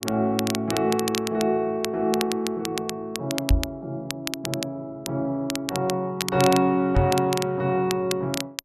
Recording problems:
crackle; vinyl, SNR 8 dB
knock on the microphone; at 3.5 s and at 7 s; peak +8 dB vs average level

